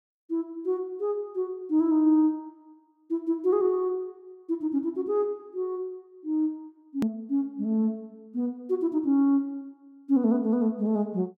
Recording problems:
hard cut with a click; at 7 s

